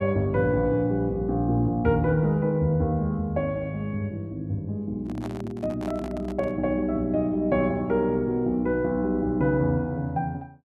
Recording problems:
handling noise; from 5 to 6.5 s; peak -10 dB vs average level

